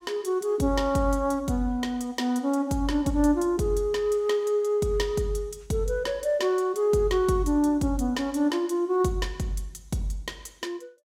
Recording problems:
none

